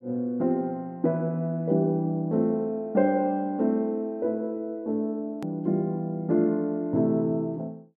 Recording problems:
hard cut with a click; at 5.5 s

